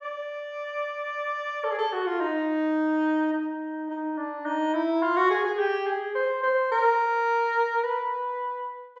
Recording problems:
none

